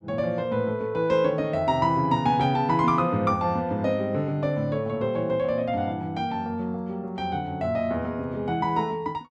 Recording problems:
none

